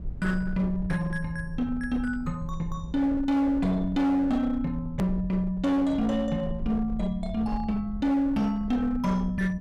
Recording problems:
distorted audio; hard clipping, uneven, signal-to-distortion ratio 11 dB
rumble; below 78 Hz, SNR 12 dB
hard cut with a click; at 5 s

